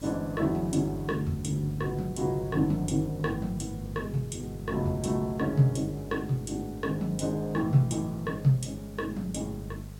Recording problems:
electrical hum; 50 Hz, harmonics up to 450 Hz, SNR 12 dB
hiss; SNR 23 dB

